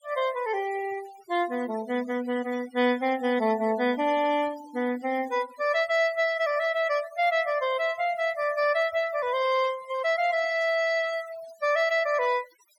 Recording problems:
denoising artefacts; signal-to-artefact ratio 17 dB

